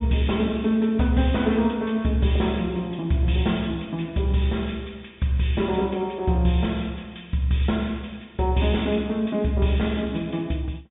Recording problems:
low-pass filter; nothing above 4 kHz

